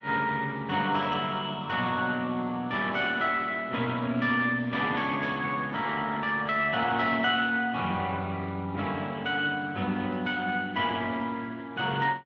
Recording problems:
codec artefacts; MP3, then Speex, log-spectral distance 3 dB

